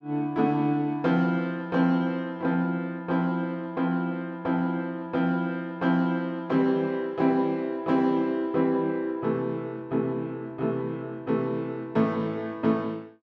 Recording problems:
none

